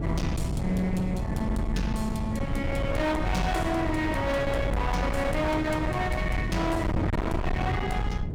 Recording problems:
distortion; hard clipping, signal-to-distortion ratio 7 dB
wind on the microphone; below 270 Hz, SNR 3 dB

